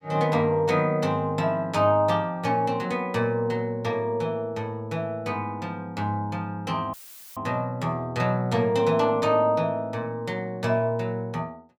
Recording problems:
dropout; at 7 s; filled with static

